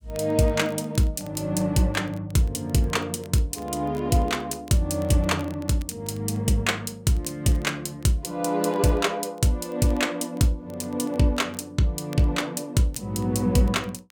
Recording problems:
crackling; vinyl, SNR 29 dB

